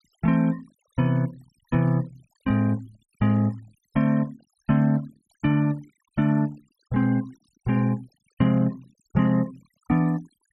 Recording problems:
noise reduction artefacts; signal-to-artefact ratio 26 dB

